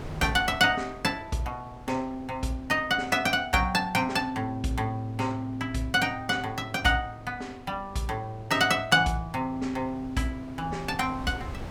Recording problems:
wind noise; below 480 Hz, SNR 19 dB

